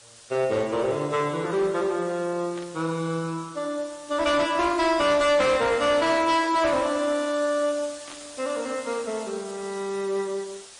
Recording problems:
lossy compression; MP3, then AAC, log-spectral distance 8 dB, nothing above 10.1 kHz
distortion; hard clipping, uneven, signal-to-distortion ratio 11 dB
background hiss; slope +1 dB per octave, SNR 18 dB
burst of static; 4 times, first at 2.5 s; peak -14 dB vs average level

